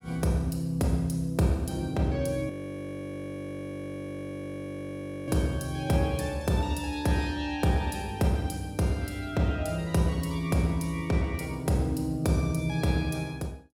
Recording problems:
audio freezing; at 2.5 s for 3 s

